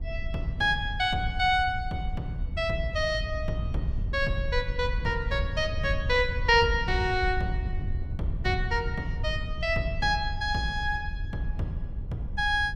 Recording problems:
wind on the microphone; below 84 Hz, SNR 6 dB

